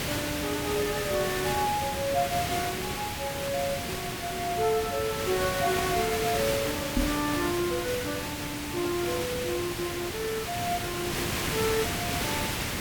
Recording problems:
background hiss; slope -2 dB per octave, SNR 0 dB
microphone thump; at 7 s; peak +6 dB vs average level

